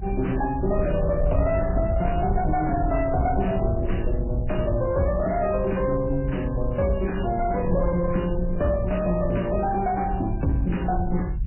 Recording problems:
lossy codec; MP3, log-spectral distance 3 dB, nothing above 2.9 kHz
distorted audio; soft clipping, signal-to-distortion ratio 10 dB
rumble; below 92 Hz, SNR 4 dB

